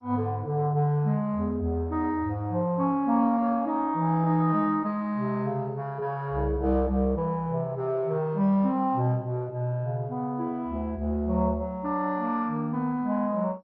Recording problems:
lossy codec; MP2, log-spectral distance 2 dB, nothing above 5 kHz

